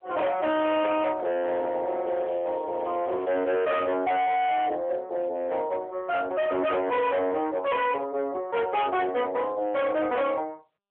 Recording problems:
telephone audio; 190 Hz to 3.7 kHz, AMR-NB
distortion; hard clipping, signal-to-distortion ratio 7 dB
crackle; from 2 to 4.5 s; loose cable, SNR 29 dB

